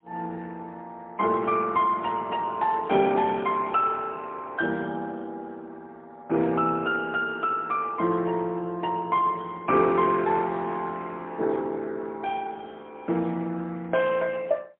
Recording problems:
phone line; 280 Hz to 3.6 kHz, AMR-NB, then MP3

